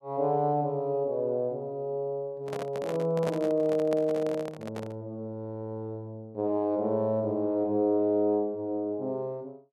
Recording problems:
microphone handling noise; from 2.5 to 5 s; peak -2 dB vs average level

